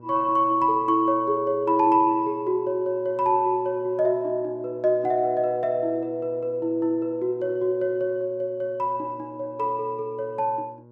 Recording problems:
hum; 60 Hz, harmonics up to 1.1 kHz, SNR 22 dB

